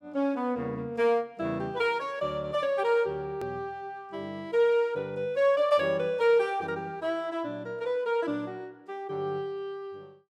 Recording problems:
edit click; at 3.5 s

